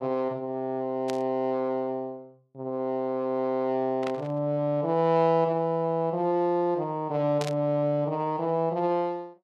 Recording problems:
static burst; at 1 s, at 4 s and at 7.5 s; peak -5 dB vs average level

